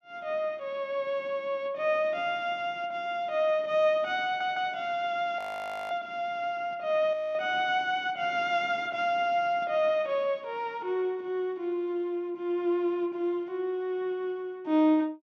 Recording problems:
audio stuttering; at 4.5 s
frozen audio; at 5.5 s for 0.5 s and at 7 s

